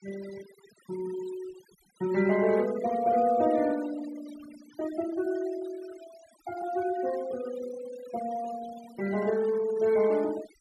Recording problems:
denoising artefacts; signal-to-artefact ratio 17 dB

